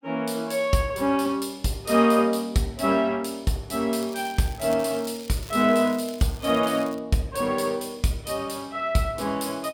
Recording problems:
crackle; from 4 to 7 s; loose cable, SNR 20 dB

